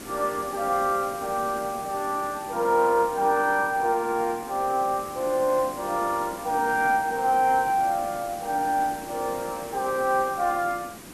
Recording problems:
background hiss; SNR 15 dB

